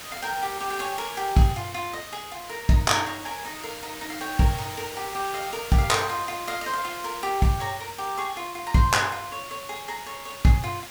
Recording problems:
background hiss; slope -1 dB per octave, SNR 12 dB

